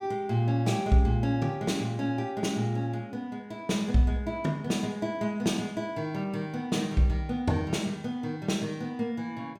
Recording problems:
none

